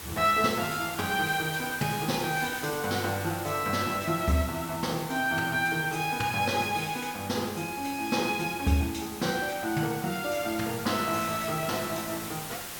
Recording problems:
background hiss; slope -2 dB per octave, SNR 10 dB

